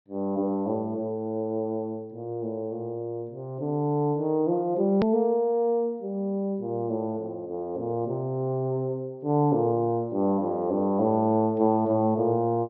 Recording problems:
low-pass filter; nothing above 5.7 kHz
edit click; at 5 s

